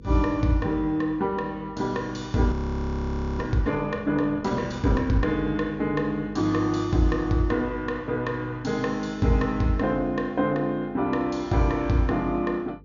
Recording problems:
low-pass filter; nothing above 7 kHz
electrical hum; 50 Hz, harmonics up to 500 Hz, SNR 20 dB
audio freezing; at 2.5 s for 1 s

